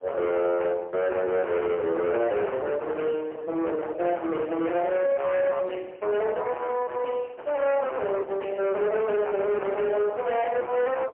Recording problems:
phone line; 710 Hz to 3.1 kHz, AMR-NB, then MP3
distorted audio; hard clipping, signal-to-distortion ratio 7 dB

